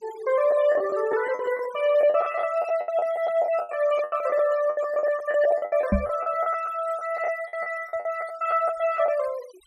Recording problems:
noise reduction artefacts; signal-to-artefact ratio 19 dB
packet loss; 16% of the sound replaced, filled with the last packet
knock on the microphone; at 6 s; peak +5 dB vs average level

